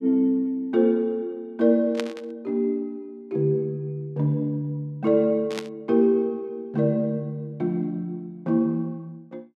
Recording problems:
burst of static; at 2 s and at 5.5 s; peak -3 dB vs average level

